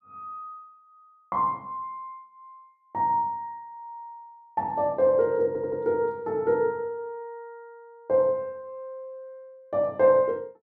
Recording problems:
stutter; at 5.5 s

